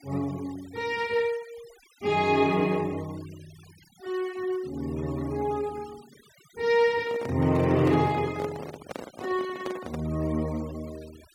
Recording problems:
noise reduction artefacts; signal-to-artefact ratio 22 dB
microphone handling noise; from 7 to 10 s; peak -4 dB vs average level

